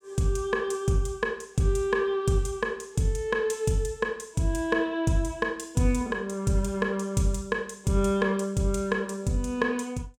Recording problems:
none

